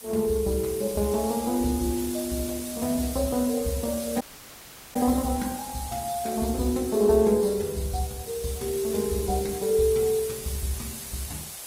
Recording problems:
lossy compression; Vorbis, then Opus, log-spectral distance 11 dB, nothing above 16 kHz
background hiss; slope 0 dB per octave, SNR 10 dB
audio cutting out; at 4 s for 0.5 s

